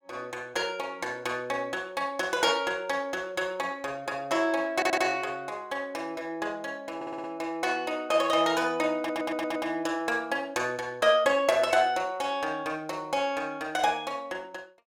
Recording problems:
stutter; at 5 s, at 7 s and at 9 s

